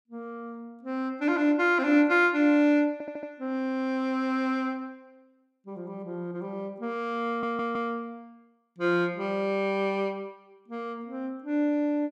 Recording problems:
audio stuttering; at 3 s and at 7.5 s

